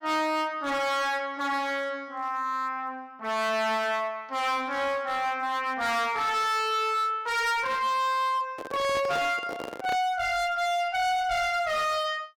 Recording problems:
distortion; hard clipping, signal-to-distortion ratio 8 dB
microphone handling noise; from 8.5 to 10 s; peak -4 dB vs average level

